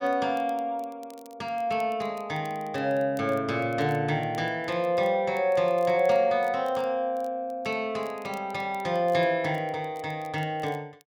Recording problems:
crackle; vinyl, SNR 29 dB

